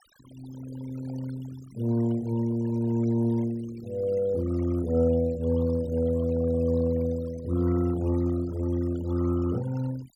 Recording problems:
denoising artefacts; signal-to-artefact ratio 21 dB

